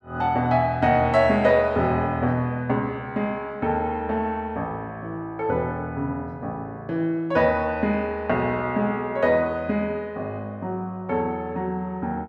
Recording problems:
none

